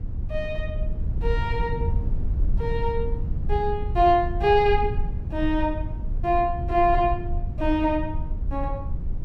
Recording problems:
low-frequency rumble; below 78 Hz, SNR 5 dB

